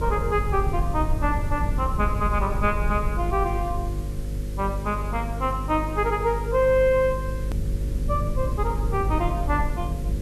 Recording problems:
mains hum; 50 Hz, harmonics up to 550 Hz, SNR 5 dB
hiss; slope -1 dB per octave, SNR 22 dB
rumble; below 90 Hz, SNR 6 dB
edit click; at 7.5 s

